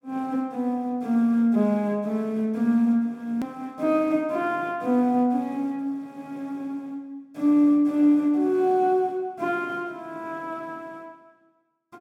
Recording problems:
click at an edit; at 3.5 s

